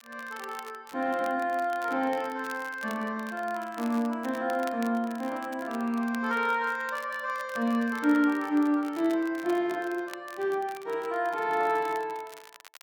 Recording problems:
crackle; vinyl, SNR 20 dB

